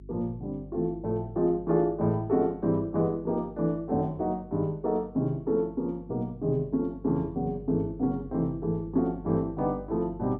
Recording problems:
electrical hum; 50 Hz, harmonics up to 400 Hz, SNR 19 dB

